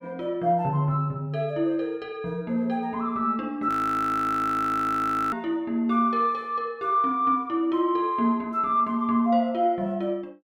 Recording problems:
frozen audio; at 3.5 s for 1.5 s

